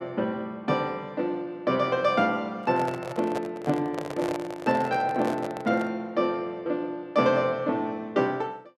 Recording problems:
microphone handling noise; from 2.5 to 6 s; peak -3 dB vs average level

